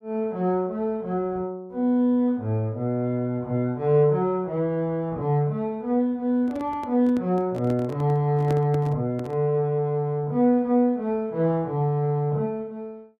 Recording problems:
handling noise; from 6.5 to 9.5 s; peak -3 dB vs average level

